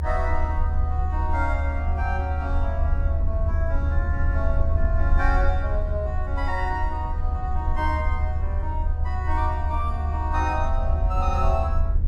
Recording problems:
rumble; below 76 Hz, SNR -4 dB

